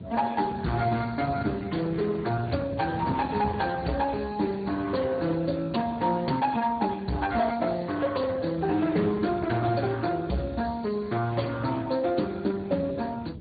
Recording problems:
low-pass filter; nothing above 4.6 kHz
lossy compression; Speex, log-spectral distance 4 dB
distorted audio; hard clipping, signal-to-distortion ratio 12 dB
wind on the microphone; below 260 Hz, SNR 13 dB

